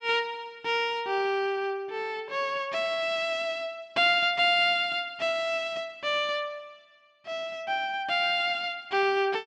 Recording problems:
none

